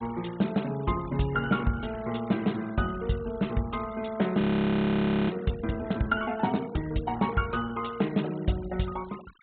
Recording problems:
treble cut off; nothing above 4 kHz
noise reduction artefacts; signal-to-artefact ratio 21 dB
frozen audio; at 4.5 s for 1 s

